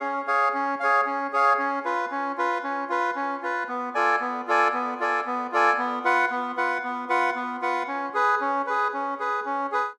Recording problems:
none

